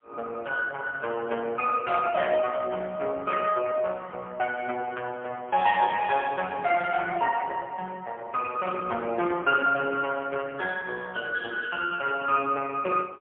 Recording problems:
phone line; 300 Hz to 2.8 kHz, AMR-NB, then MP3

